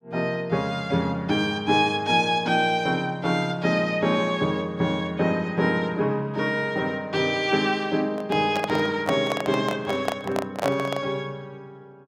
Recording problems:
microphone handling noise; from 8 to 11 s; peak +2 dB vs average level

